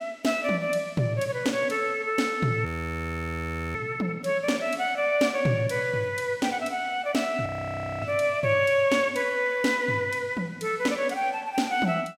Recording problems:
audio freezing; at 2.5 s for 1 s and at 7.5 s for 0.5 s

